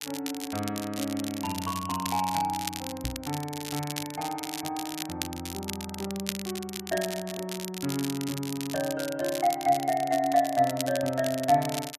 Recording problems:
crackling; vinyl, SNR 8 dB
microphone thump; at 3 s; peak -1 dB vs average level

